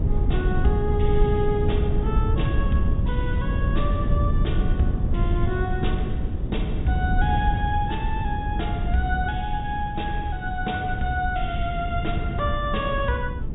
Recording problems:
treble missing; nothing above 4 kHz
wind on the microphone; below 120 Hz, SNR -2 dB

